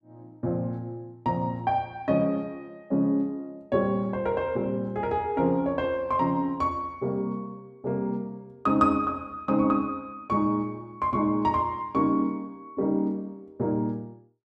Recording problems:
none

